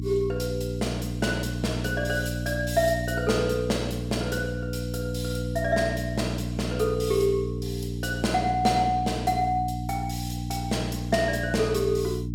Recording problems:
electrical hum; 60 Hz, harmonics up to 300 Hz, SNR 4 dB

